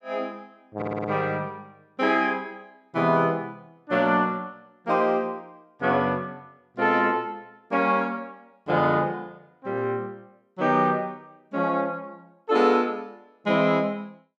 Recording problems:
audio stuttering; at 1 s

